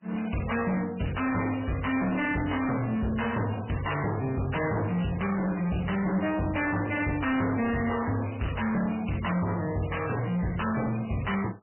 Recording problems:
lossy compression; MP3, log-spectral distance 8 dB, nothing above 2.9 kHz
distortion; hard clipping, signal-to-distortion ratio 6 dB

